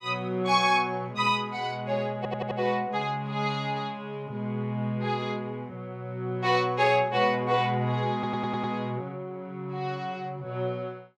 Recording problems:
audio stuttering; at 2 s and at 8 s

